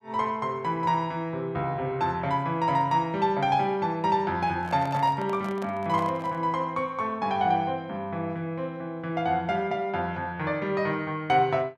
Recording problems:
microphone handling noise; from 4.5 to 6.5 s; peak -8 dB vs average level

